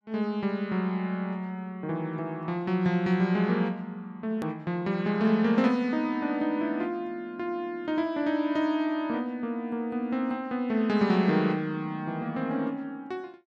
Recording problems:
hard cut with a click; at 4.5 s

